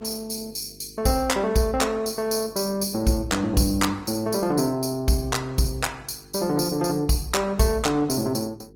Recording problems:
lossy compression; Opus, log-spectral distance 5 dB, nothing above 17 kHz
hum; 50 Hz, harmonics up to 450 Hz, SNR 26 dB

